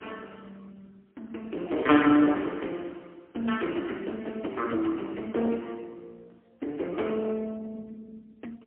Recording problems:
phone line; 240 Hz to 3.7 kHz, AMR-NB, then MP3
distortion; soft clipping, signal-to-distortion ratio 13 dB

